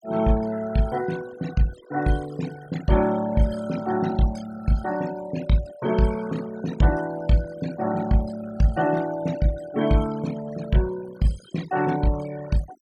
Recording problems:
denoising artefacts; signal-to-artefact ratio 16 dB

